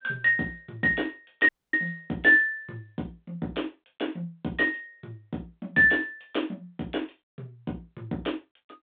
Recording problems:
phone line; 130 Hz to 3.7 kHz, G.726
dropout; at 1.5 s

